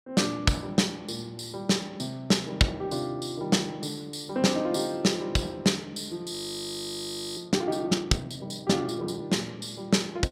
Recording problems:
audio freezing; at 6.5 s for 1 s

